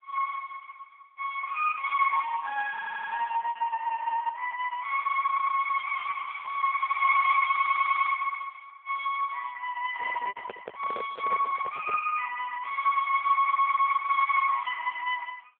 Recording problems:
telephone audio; 390 Hz to 3.2 kHz, AMR-NB
packet loss; 6% of the sound replaced, filled with repeated pitch periods
audio stuttering; 4 times, first at 2.5 s
handling noise; from 10 to 12 s; peak -7 dB vs average level

